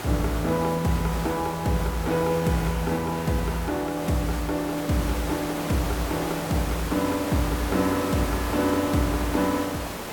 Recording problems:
hiss; slope -5 dB per octave, SNR 7 dB

